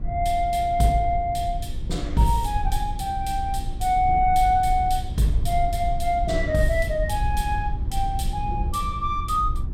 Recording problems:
electrical hum; 60 Hz, harmonics up to 360 Hz, SNR 18 dB
low-frequency rumble; below 68 Hz, SNR 7 dB

